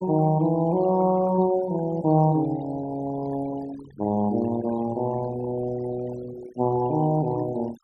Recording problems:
noise reduction artefacts; signal-to-artefact ratio 17 dB

